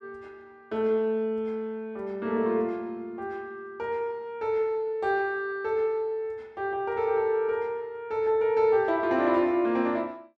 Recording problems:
none

